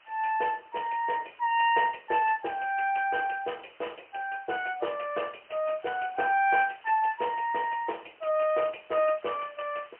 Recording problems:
phone line; 280 Hz to 3.1 kHz, AMR-NB, then MP3
hiss; SNR 27 dB

